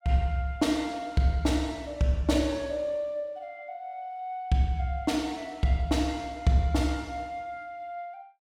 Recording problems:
none

